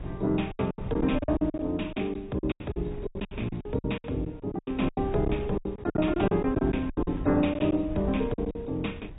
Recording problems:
low-pass filter; nothing above 3.8 kHz
codec artefacts; AAC, log-spectral distance 2 dB
wind noise; below 140 Hz, SNR 12 dB
packet loss; 17% of the sound replaced, filled with silence

